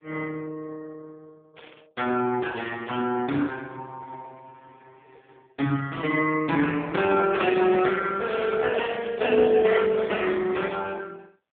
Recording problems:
phone line; 170 Hz to 3.5 kHz, AMR-NB
burst of static; 4 times, first at 1.5 s; peak -17 dB vs average level

